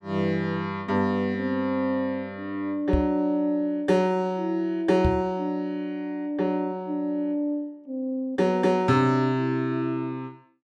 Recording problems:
knock on the microphone; at 3 s and at 5 s; peak +4 dB vs average level

